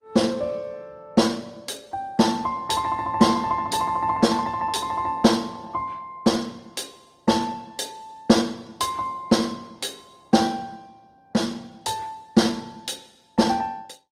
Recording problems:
codec artefacts; Opus, log-spectral distance 3 dB, nothing above 18.9 kHz

